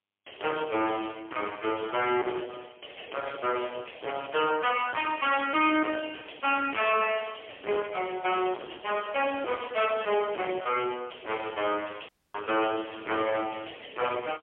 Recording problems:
telephone audio; 260 Hz to 3.3 kHz, AMR-NB, then MP3
distorted audio; soft clipping, signal-to-distortion ratio 5 dB
dropout; at 12 s

